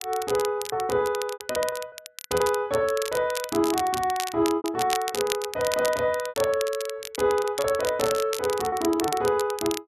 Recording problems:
crackling; vinyl, SNR 9 dB
packet loss; 7% of the sound replaced, filled with repeated pitch periods

